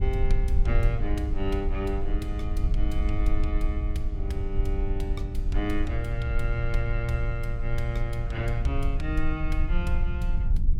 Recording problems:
rumble; below 56 Hz, SNR -2 dB

